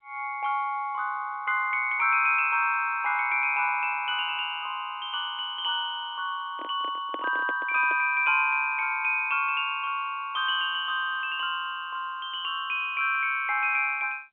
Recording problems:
phone line; 260 Hz to 3.5 kHz, G.711
microphone handling noise; from 6.5 to 8 s; peak -6 dB vs average level

